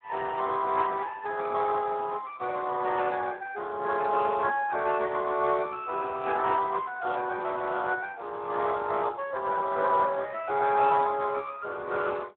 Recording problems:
telephone audio; 320 Hz to 3.7 kHz, Speex

